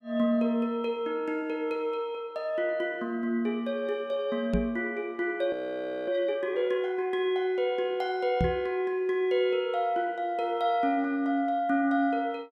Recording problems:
microphone bump; at 4.5 s and at 8.5 s; peak +4 dB vs average level
frozen audio; at 5.5 s for 0.5 s

